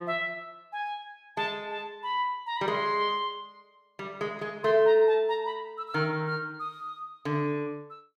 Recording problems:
none

